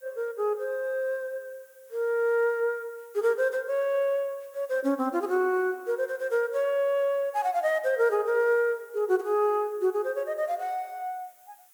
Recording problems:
background hiss; SNR 28 dB

